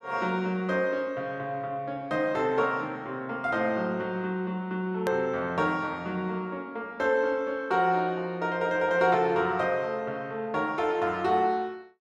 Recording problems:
click at an edit; at 5 s

